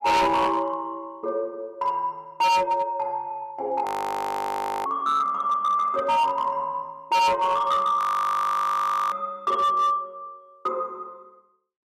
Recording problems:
distorted audio; hard clipping, signal-to-distortion ratio 6 dB
audio freezing; at 4 s for 1 s and at 8 s for 1 s

